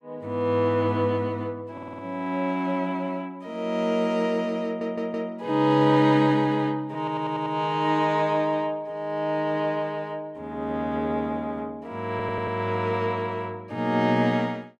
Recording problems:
audio stuttering; 4 times, first at 1.5 s

